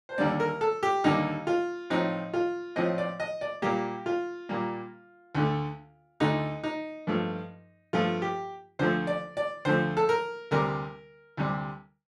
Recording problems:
none

